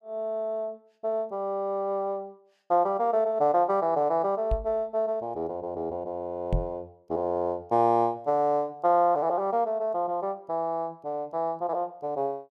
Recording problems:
knock on the microphone; at 4.5 s and at 6.5 s; peak +3 dB vs average level

